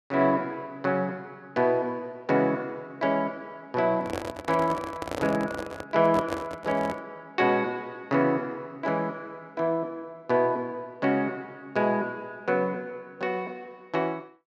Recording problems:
handling noise; from 4 to 7 s; peak -1 dB vs average level

